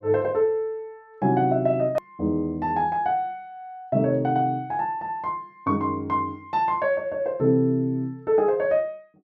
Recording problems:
hard cut with a click; at 2 s

